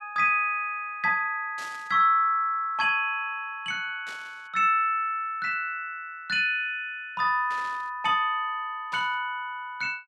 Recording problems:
burst of static; 4 times, first at 1.5 s; peak -12 dB vs average level

